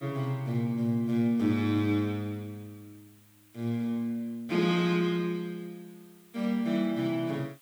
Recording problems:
hiss; SNR 29 dB

